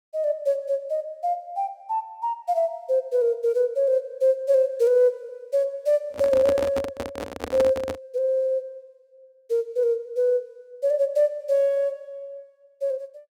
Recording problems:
handling noise; from 6 to 8 s; peak 0 dB vs average level

